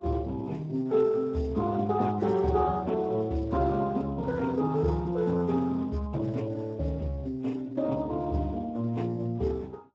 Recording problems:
lossy codec; MP3, then Speex, log-spectral distance 3 dB

